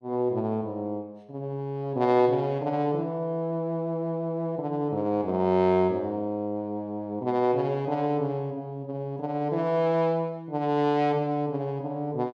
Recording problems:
none

